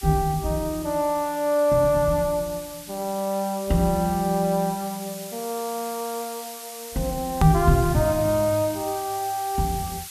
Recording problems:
hiss; slope +6 dB per octave, SNR 13 dB
hard cut with a click; at 7.5 s

